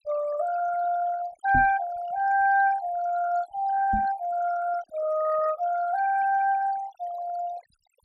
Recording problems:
denoising artefacts; signal-to-artefact ratio 17 dB
microphone bump; at 1.5 s and at 4 s; peak -1 dB vs average level

